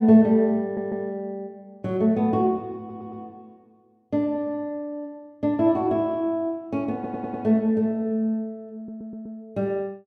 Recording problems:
stutter; 4 times, first at 0.5 s

